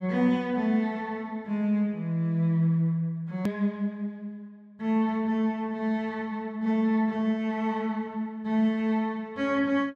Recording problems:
click at an edit; at 3.5 s

